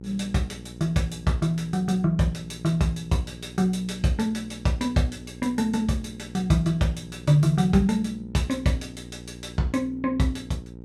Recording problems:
hum; 60 Hz, harmonics up to 600 Hz, SNR 16 dB

